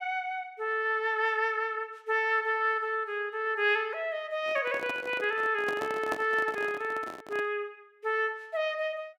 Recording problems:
handling noise; from 4.5 to 7.5 s; peak -1 dB vs average level

